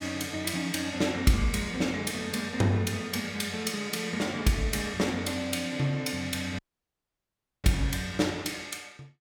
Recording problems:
audio cutting out; at 6.5 s for 1 s

